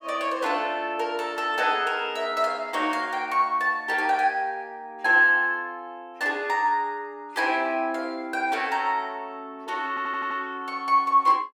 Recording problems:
stutter; at 10 s

